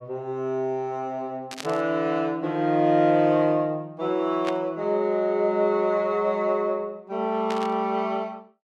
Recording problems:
burst of static; at 1.5 s, at 4.5 s and at 7.5 s; peak -4 dB vs average level

